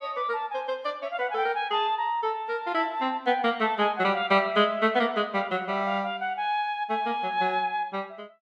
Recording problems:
none

